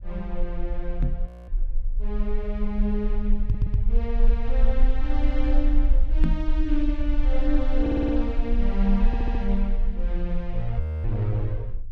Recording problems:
low-frequency rumble; below 40 Hz, strongest tone 22 Hz, SNR -2 dB
microphone bump; at 1 s, at 3.5 s and at 6 s; peak +8 dB vs average level
frozen audio; at 1.5 s and at 11 s
stutter; at 3.5 s, at 8 s and at 9 s

